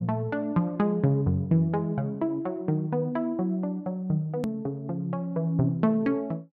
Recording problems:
hard cut with a click; at 4.5 s

